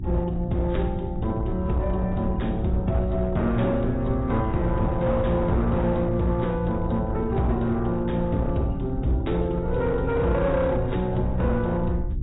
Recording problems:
codec artefacts; AAC, log-spectral distance 2 dB, nothing above 3.8 kHz
distortion; hard clipping, signal-to-distortion ratio 12 dB
electrical hum; 60 Hz, harmonics up to 360 Hz, SNR 10 dB
rumble; below 110 Hz, SNR 7 dB

